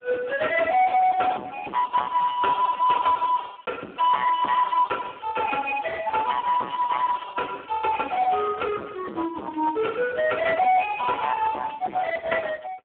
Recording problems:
phone line; 280 Hz to 2.5 kHz, Speex
distortion; hard clipping, signal-to-distortion ratio 7 dB

